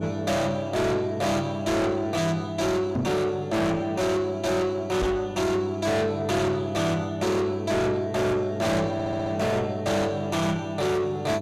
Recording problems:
distortion; soft clipping, signal-to-distortion ratio 6 dB
hum; 50 Hz, harmonics up to 900 Hz, SNR 10 dB
microphone bump; at 3 s and at 5 s; peak +4 dB vs average level
stutter; at 9 s

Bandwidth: 14 kHz